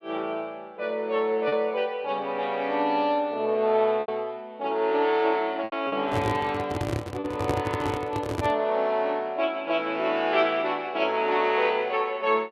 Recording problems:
packet loss; 2% of the sound replaced, filled with repeated pitch periods
handling noise; from 6 to 8.5 s; peak +2 dB vs average level

